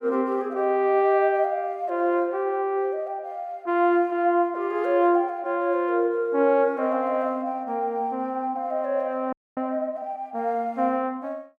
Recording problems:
audio freezing; at 9.5 s

